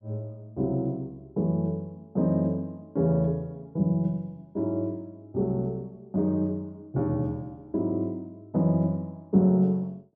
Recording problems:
none

